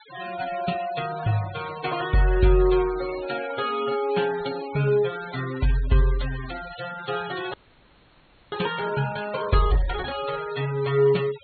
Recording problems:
low-pass filter; nothing above 4.4 kHz
noise reduction artefacts; signal-to-artefact ratio 15 dB
frozen audio; at 7.5 s for 1 s

